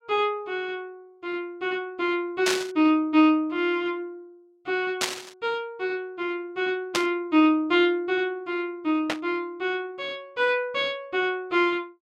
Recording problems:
burst of static; 4 times, first at 2.5 s; peak +5 dB vs average level

